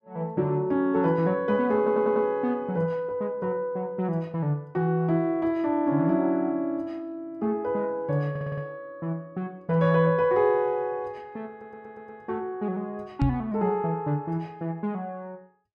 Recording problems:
audio stuttering; at 2 s, at 8.5 s and at 12 s
knock on the microphone; at 13 s; peak +5 dB vs average level

